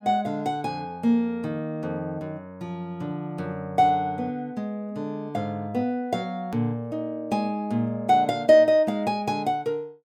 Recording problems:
hard cut with a click; at 6.5 s

